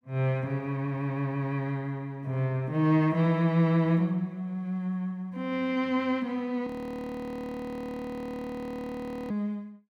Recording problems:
frozen audio; at 6.5 s for 2.5 s

